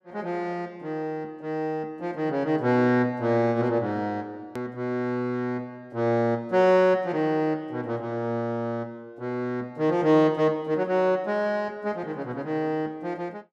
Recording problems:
click at an edit; at 4.5 s

